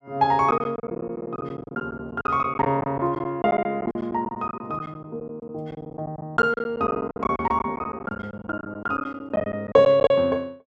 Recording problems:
packet loss; 16% of the sound replaced, filled with silence

